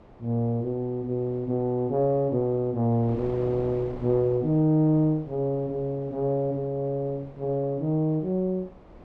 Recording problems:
wind noise; below 650 Hz, SNR 20 dB

